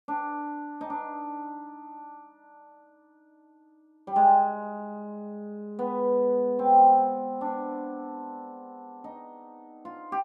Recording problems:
none

